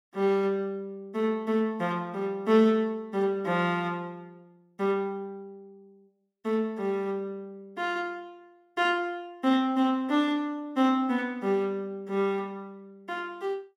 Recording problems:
none

